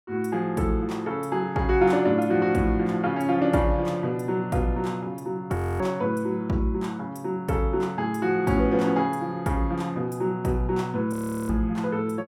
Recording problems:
frozen audio; at 5.5 s and at 11 s

